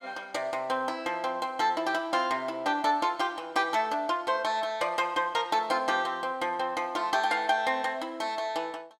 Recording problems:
none

